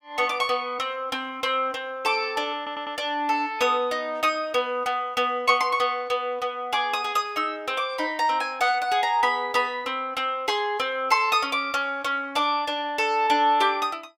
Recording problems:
stutter; at 2.5 s

